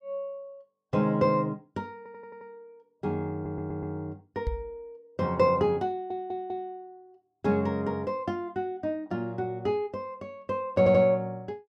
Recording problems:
stutter; 4 times, first at 2 s
knock on the microphone; at 4.5 s; peak +1 dB vs average level

